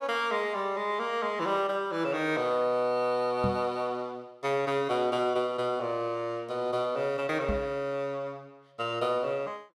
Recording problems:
microphone thump; at 3.5 s and at 7.5 s; peak +2 dB vs average level

